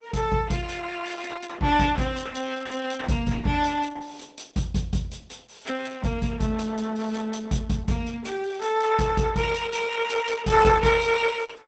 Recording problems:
codec artefacts; Opus, log-spectral distance 5 dB, nothing above 8 kHz

